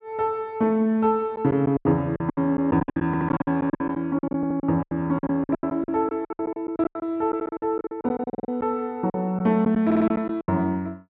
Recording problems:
lost packets; 18% of the sound replaced, filled with silence
stutter; 4 times, first at 3 s

